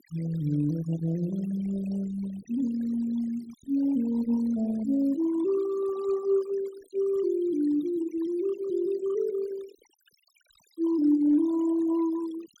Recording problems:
denoising artefacts; signal-to-artefact ratio 21 dB

